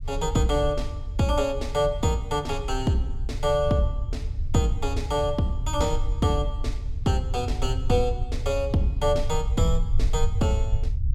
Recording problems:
low-frequency rumble; below 74 Hz, SNR 4 dB

